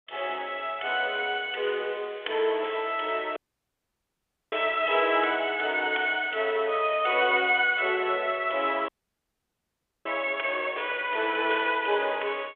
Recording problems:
telephone audio; 340 Hz to 3.5 kHz, G.726
dropout; at 3.5 s for 1 s and at 9 s for 1 s

